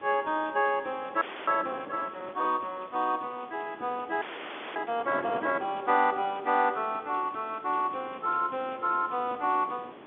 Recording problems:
phone line; 260 Hz to 3.5 kHz, G.711
background hiss; SNR 28 dB
wind on the microphone; below 880 Hz, SNR 17 dB
frozen audio; at 1 s and at 4 s for 0.5 s

